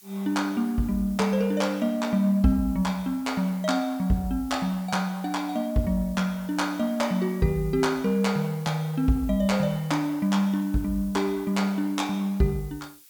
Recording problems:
hiss; slope +5 dB per octave, SNR 23 dB

